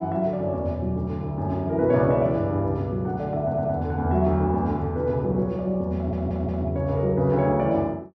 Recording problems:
audio stuttering; at 3.5 s and at 6 s

